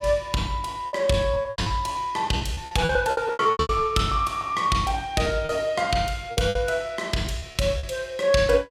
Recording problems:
packet loss; 13% of the sound replaced, filled with repeated pitch periods

